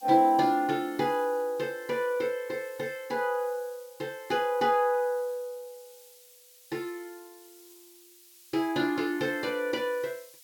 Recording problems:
hiss; slope +5 dB per octave, SNR 23 dB

